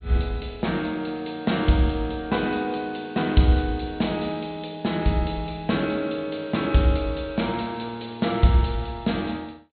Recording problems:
treble missing; nothing above 4.2 kHz

